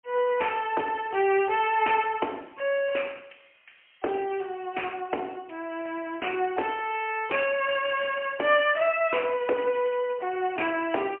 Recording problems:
telephone audio; 280 Hz to 3.1 kHz, AMR-NB, then MP3

